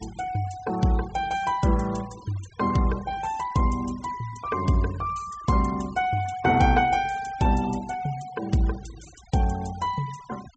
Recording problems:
treble cut off; nothing above 8 kHz
noise reduction artefacts; signal-to-artefact ratio 21 dB

